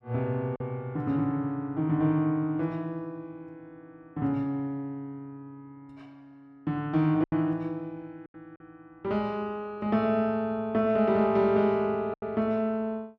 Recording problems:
lost packets; 2% of the sound replaced, filled with silence

